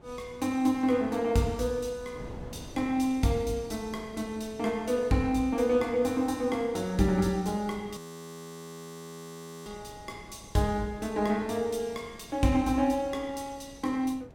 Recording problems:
wind noise; below 410 Hz, SNR 21 dB
audio freezing; at 8 s for 1.5 s

